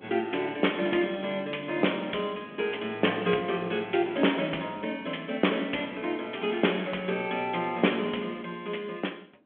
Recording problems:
phone line; 220 Hz to 3.4 kHz, G.726
wind on the microphone; below 460 Hz, SNR 22 dB

